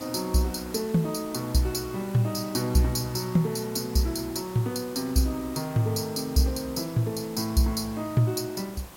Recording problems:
background hiss; slope -4 dB per octave, SNR 17 dB

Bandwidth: 16.5 kHz